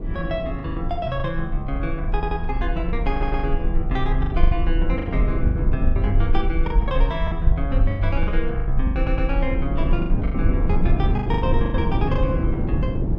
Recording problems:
low-frequency rumble; below 50 Hz, SNR -1 dB
wind noise; below 230 Hz, SNR 2 dB
packet loss; 13% of the sound replaced, filled with the last packet
stutter; at 2 s, at 3 s and at 9 s

